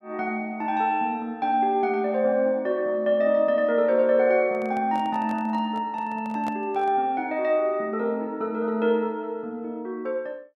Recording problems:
microphone handling noise; from 4.5 to 7 s; peak -8 dB vs average level

